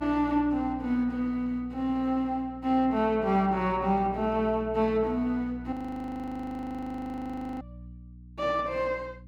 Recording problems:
mains hum; 60 Hz, harmonics up to 300 Hz, SNR 17 dB
audio freezing; at 5.5 s for 2 s

